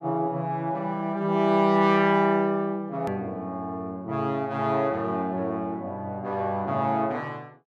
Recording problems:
edit click; at 3 s

